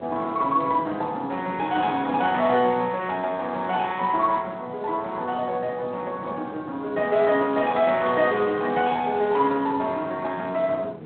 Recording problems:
phone line; 240 Hz to 3.7 kHz, Speex
wind noise; below 480 Hz, SNR 17 dB

